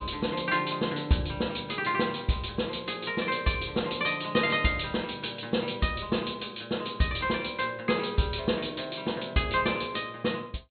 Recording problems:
low-pass filter; nothing above 4.3 kHz

